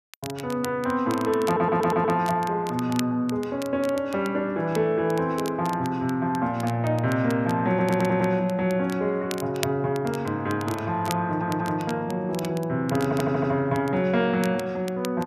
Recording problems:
crackling; vinyl, SNR 17 dB
stutter; 4 times, first at 1.5 s

